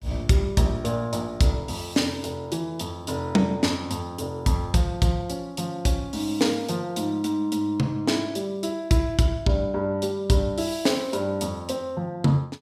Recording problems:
none

